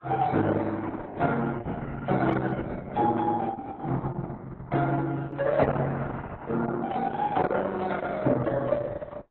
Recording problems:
lossy codec; Opus, then AAC, log-spectral distance 3 dB

